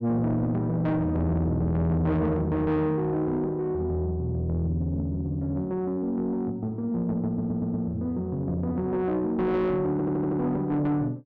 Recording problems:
distortion; soft clipping, signal-to-distortion ratio 6 dB
stutter; at 7.5 s and at 10 s

